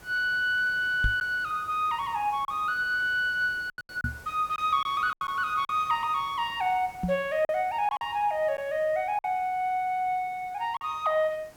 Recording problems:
background hiss; slope -4 dB per octave, SNR 24 dB
lost packets; 5% of the sound replaced, filled with silence
knock on the microphone; at 1 s, at 4 s and at 7 s; peak +2 dB vs average level

